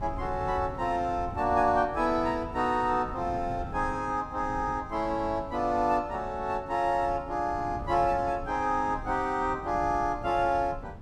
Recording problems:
wind noise; below 200 Hz, SNR 14 dB

